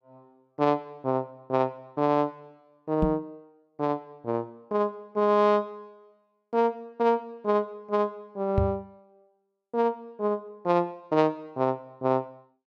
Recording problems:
microphone bump; at 3 s and at 8.5 s; peak +5 dB vs average level

